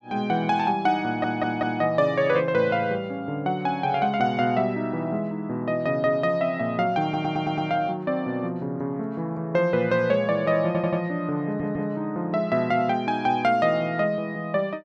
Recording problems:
audio stuttering; 4 times, first at 1 s

